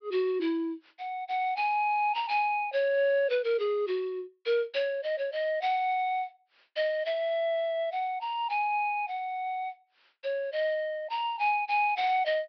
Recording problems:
treble cut off; nothing above 5.5 kHz

